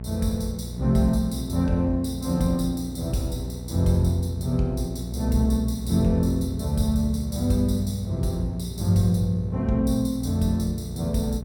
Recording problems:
hum; 60 Hz, harmonics up to 660 Hz, SNR 10 dB

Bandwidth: 17 kHz